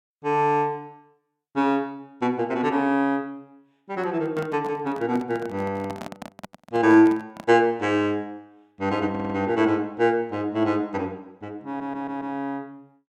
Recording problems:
handling noise; from 4 to 7.5 s; peak -7 dB vs average level
audio stuttering; at 9 s and at 12 s

